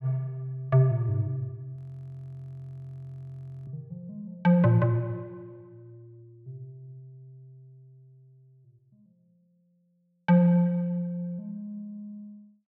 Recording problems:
frozen audio; at 2 s for 2 s

